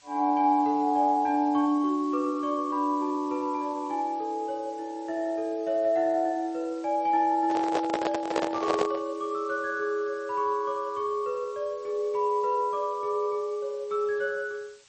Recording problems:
codec artefacts; MP3, log-spectral distance 3 dB, nothing above 7.1 kHz
background hiss; slope +2 dB per octave, SNR 27 dB
handling noise; from 7.5 to 9 s; peak +4 dB vs average level

